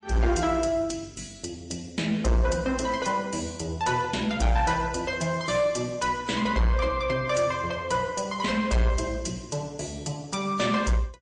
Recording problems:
codec artefacts; MP3, log-spectral distance 2 dB, nothing above 8.7 kHz
distorted audio; soft clipping, signal-to-distortion ratio 10 dB

